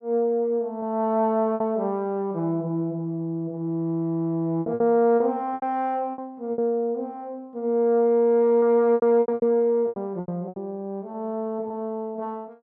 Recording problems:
packet loss; 8% of the sound replaced, filled with repeated pitch periods

